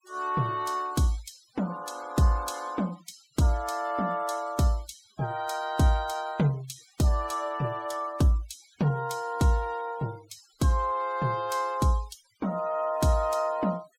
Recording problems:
noise reduction artefacts; signal-to-artefact ratio 22 dB

